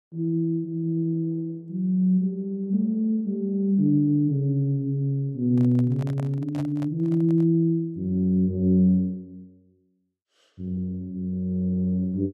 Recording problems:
microphone handling noise; from 5.5 to 7.5 s; peak -11 dB vs average level

